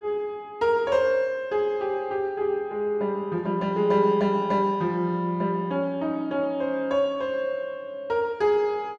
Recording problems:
none

